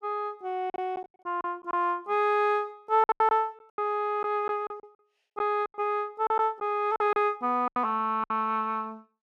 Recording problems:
packet loss; 10% of the sound replaced, filled with silence

